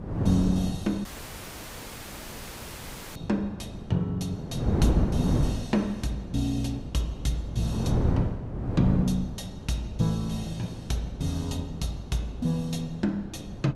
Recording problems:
wind on the microphone; below 270 Hz, SNR 2 dB
audio cutting out; at 1 s for 2 s

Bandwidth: 15.5 kHz